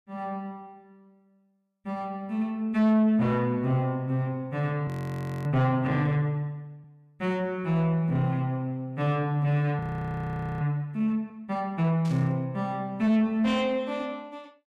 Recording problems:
distortion; soft clipping, signal-to-distortion ratio 7 dB
frozen audio; at 5 s for 0.5 s and at 10 s for 1 s
burst of static; at 12 s; peak -15 dB vs average level

